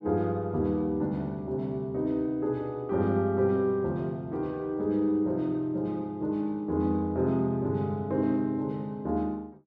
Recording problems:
none

